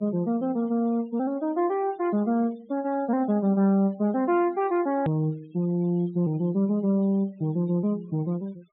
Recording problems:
treble cut off; nothing above 3.9 kHz
noise reduction artefacts; signal-to-artefact ratio 27 dB
hard cut with a click; at 5 s

